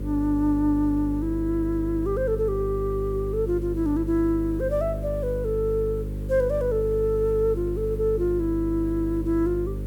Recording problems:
hum; 50 Hz, harmonics up to 550 Hz, SNR 7 dB
background hiss; SNR 29 dB

